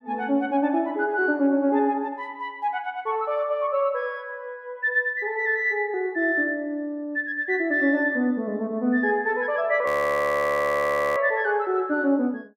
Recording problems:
audio freezing; at 10 s for 1.5 s

